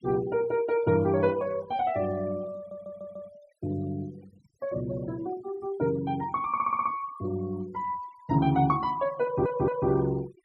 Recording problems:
denoising artefacts; signal-to-artefact ratio 22 dB
audio stuttering; at 2.5 s, at 6.5 s and at 9 s

